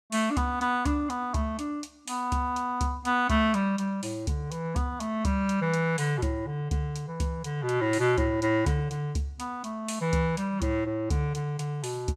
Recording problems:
none

